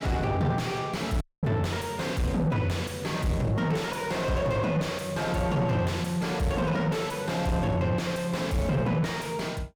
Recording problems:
distortion; soft clipping, signal-to-distortion ratio 7 dB
audio cutting out; at 1 s

